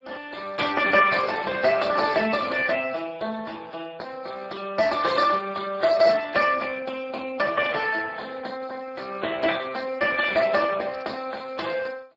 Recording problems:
lossy compression; MP3, then Speex, log-spectral distance 5 dB
crackle; at 11 s; loose cable, SNR 29 dB

